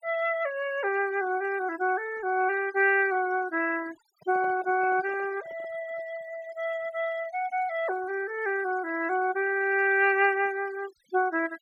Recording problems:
denoising artefacts; signal-to-artefact ratio 20 dB
handling noise; from 4 to 6 s; peak -12 dB vs average level

